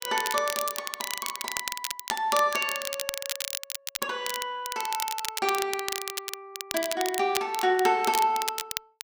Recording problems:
crackling; vinyl, SNR 4 dB

